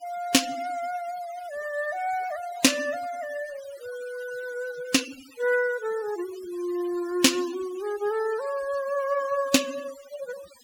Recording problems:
noise reduction artefacts; signal-to-artefact ratio 16 dB

